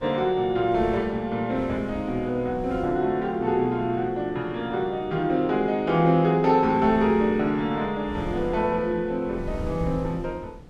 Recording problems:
wind on the microphone; below 190 Hz, SNR 16 dB

